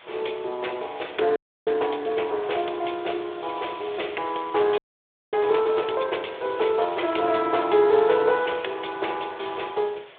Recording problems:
phone line; 320 Hz to 3.6 kHz, Speex
hiss; SNR 21 dB
wind on the microphone; below 820 Hz, SNR 24 dB
frozen audio; at 1.5 s and at 5 s for 0.5 s

